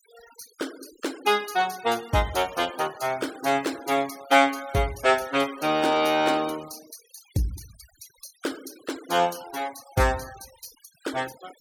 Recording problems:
noise reduction artefacts; signal-to-artefact ratio 19 dB

